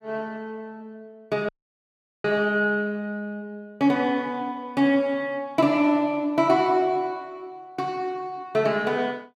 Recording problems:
audio cutting out; at 1.5 s for 1 s

